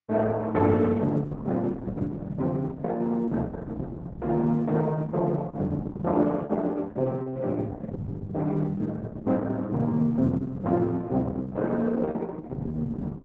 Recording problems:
lossy codec; Opus, then Opus, log-spectral distance 3 dB

